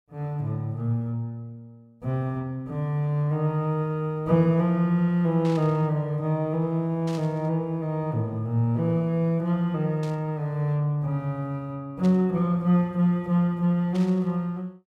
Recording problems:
burst of static; 5 times, first at 5.5 s; peak -13 dB vs average level

